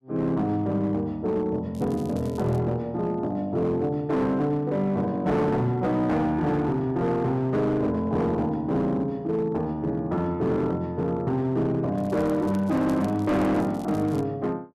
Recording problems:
distorted audio; hard clipping, signal-to-distortion ratio 11 dB
crackling; at 1.5 s and from 12 to 14 s; loose cable, SNR 26 dB

